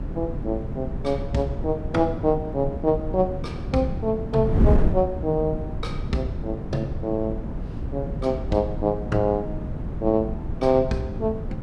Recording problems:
wind on the microphone; below 190 Hz, SNR 4 dB

